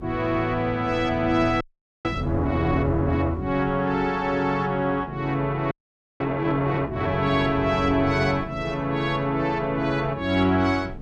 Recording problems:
hum; 50 Hz, harmonics up to 450 Hz, SNR 20 dB
wind noise; below 210 Hz, SNR 16 dB
audio freezing; at 1.5 s and at 5.5 s

